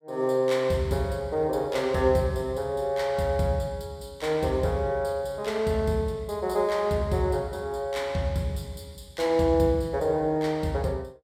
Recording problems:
none

